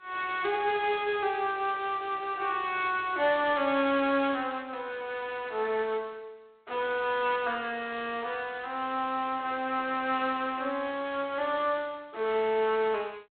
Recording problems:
telephone audio; 300 Hz to 3.9 kHz, G.726

